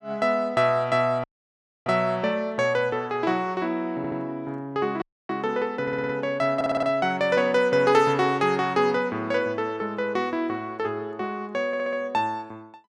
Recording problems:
audio cutting out; at 1 s for 0.5 s and at 5 s
stutter; 4 times, first at 4 s

